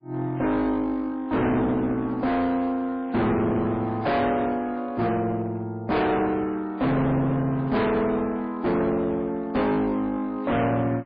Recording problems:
lossy codec; MP3, log-spectral distance 2 dB, nothing above 4.4 kHz
distortion; hard clipping, uneven, signal-to-distortion ratio 5 dB

